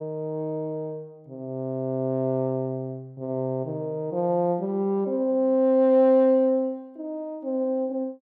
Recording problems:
none

